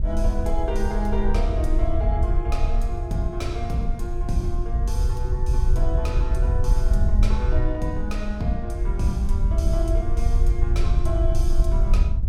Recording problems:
wind noise; below 64 Hz, SNR -5 dB

